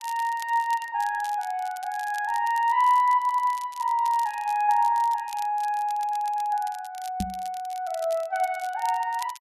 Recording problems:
crackling; vinyl, SNR 20 dB
audio stuttering; at 3 s and at 6 s
knock on the microphone; at 7 s; peak -1 dB vs average level

